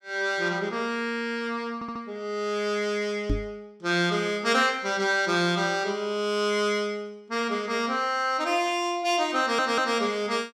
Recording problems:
audio stuttering; at 1.5 s and at 9.5 s
microphone thump; at 3.5 s; peak +2 dB vs average level

